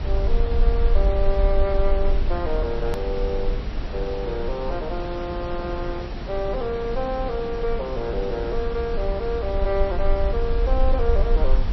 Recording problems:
lossy codec; MP3, log-spectral distance 2 dB
hum; 60 Hz, harmonics up to 600 Hz, SNR 19 dB
background hiss; slope -6 dB per octave, SNR 7 dB
rumble; below 50 Hz, strongest tone 22 Hz, SNR 0 dB
hard cut with a click; at 3 s

